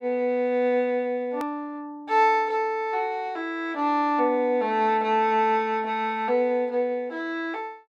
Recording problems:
edit click; at 1.5 s

